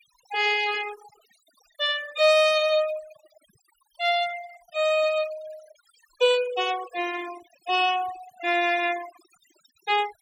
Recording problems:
denoising artefacts; signal-to-artefact ratio 16 dB

